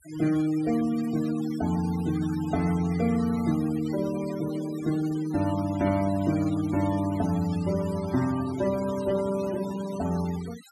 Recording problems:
denoising artefacts; signal-to-artefact ratio 16 dB

